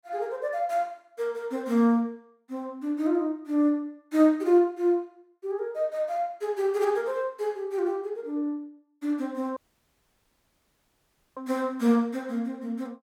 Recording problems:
audio cutting out; at 9.5 s for 2 s

